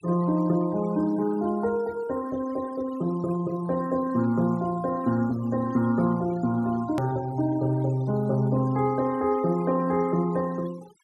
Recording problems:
denoising artefacts; signal-to-artefact ratio 21 dB
edit click; at 7 s

